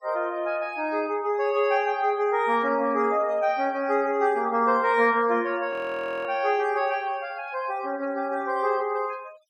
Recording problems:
noise reduction artefacts; signal-to-artefact ratio 26 dB
audio freezing; at 5.5 s for 0.5 s

